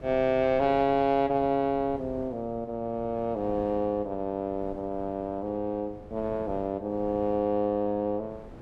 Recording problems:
wind noise; below 420 Hz, SNR 19 dB

